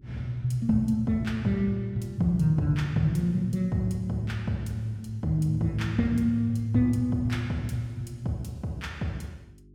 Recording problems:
hum; 50 Hz, harmonics up to 400 Hz, SNR 27 dB

